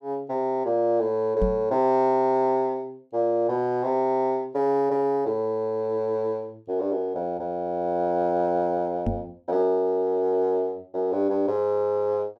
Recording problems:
microphone thump; at 1.5 s and at 9 s; peak +2 dB vs average level

